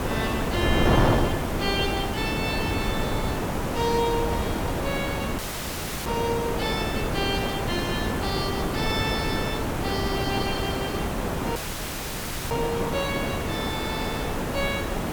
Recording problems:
background hiss; slope -6 dB per octave, SNR 1 dB
wind noise; below 610 Hz, SNR 0 dB
audio cutting out; at 5.5 s for 0.5 s and at 12 s for 1 s

